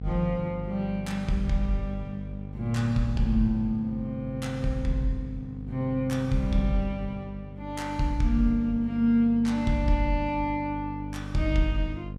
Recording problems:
electrical hum; 50 Hz, harmonics up to 550 Hz, SNR 10 dB

